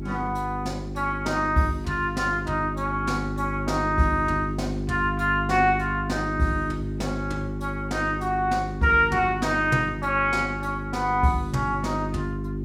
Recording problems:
hum; 50 Hz, harmonics up to 400 Hz, SNR 6 dB
hiss; slope -10 dB per octave, SNR 27 dB

